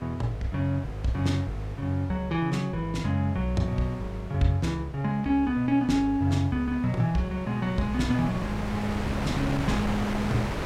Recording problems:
wind on the microphone; below 1.1 kHz, SNR 9 dB

